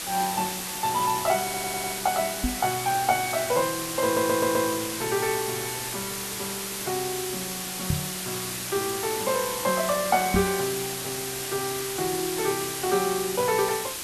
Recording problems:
background hiss; SNR 3 dB
crackle; from 1 to 3.5 s; loose cable, SNR 22 dB
audio stuttering; at 1.5 s and at 4 s
microphone bump; at 2.5 s, at 8 s and at 10 s; peak +5 dB vs average level

